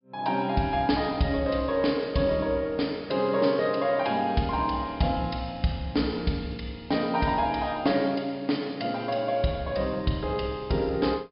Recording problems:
treble missing; nothing above 5.5 kHz

